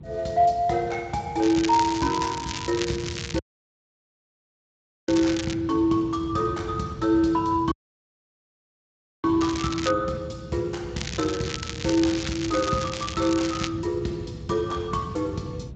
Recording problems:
codec artefacts; Speex, log-spectral distance 6 dB, nothing above 7.6 kHz
rumble; below 180 Hz, SNR 13 dB
crackling; from 1.5 to 5.5 s, at 9.5 s and from 11 to 14 s; loose cable, SNR 8 dB
audio cutting out; at 3.5 s for 1.5 s and at 7.5 s for 1.5 s

